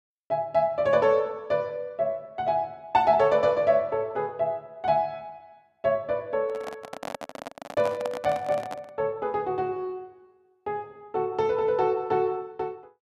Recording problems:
microphone handling noise; from 6.5 to 9 s; peak -4 dB vs average level

